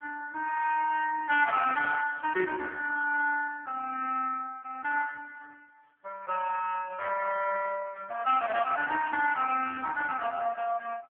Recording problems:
phone line; 320 Hz to 3.2 kHz, AMR-NB

